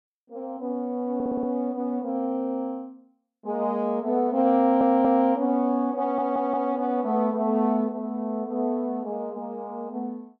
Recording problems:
stutter; at 1 s, at 4.5 s and at 6 s

